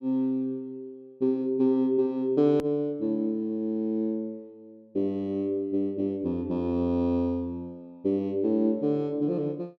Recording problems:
hard cut with a click; at 2.5 s

